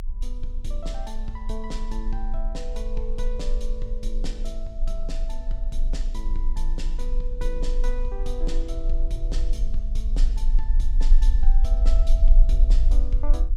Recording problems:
low-frequency rumble; below 36 Hz, strongest tone 24 Hz, SNR -11 dB

